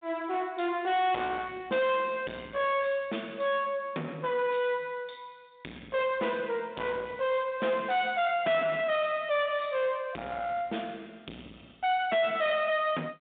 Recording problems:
telephone audio; 170 Hz to 3.7 kHz, G.726
distorted audio; soft clipping, signal-to-distortion ratio 6 dB

